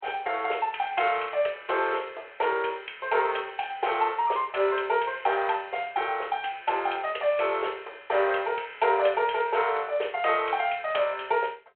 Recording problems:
telephone audio; 370 Hz to 3.3 kHz, G.726

